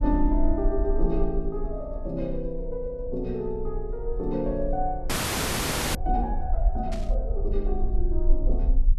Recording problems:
rumble; below 42 Hz, strongest tone 22 Hz, SNR 1 dB
audio freezing; at 5 s for 1 s
static burst; at 7 s; peak -7 dB vs average level

